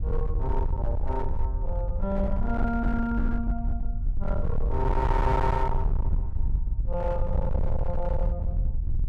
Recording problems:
distorted audio; hard clipping, signal-to-distortion ratio 8 dB
low-frequency rumble; below 70 Hz, SNR -1 dB

